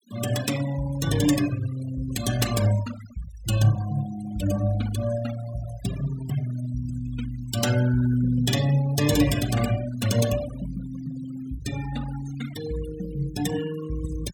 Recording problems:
denoising artefacts; signal-to-artefact ratio 12 dB

